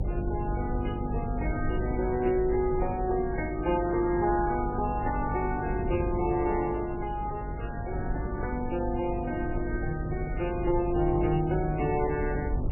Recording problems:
codec artefacts; AAC, then MP3, log-spectral distance 2 dB, nothing above 2.4 kHz
hum; 50 Hz, harmonics up to 500 Hz, SNR 8 dB
rumble; below 120 Hz, SNR 8 dB
wind on the microphone; below 230 Hz, SNR 16 dB

